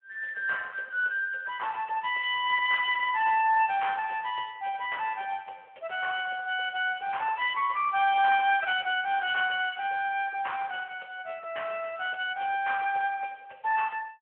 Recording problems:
telephone audio; 320 Hz to 3.3 kHz, Speex

